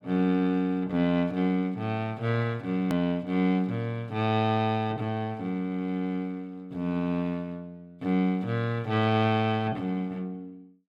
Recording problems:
hard cut with a click; at 3 s

